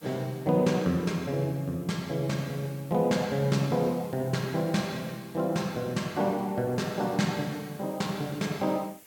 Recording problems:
background hiss; slope -2 dB per octave, SNR 23 dB

